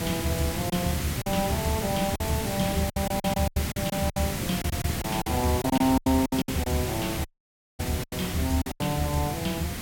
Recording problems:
hiss; SNR 3 dB
lost packets; 11% of the sound replaced, filled with silence
audio cutting out; at 7.5 s for 0.5 s

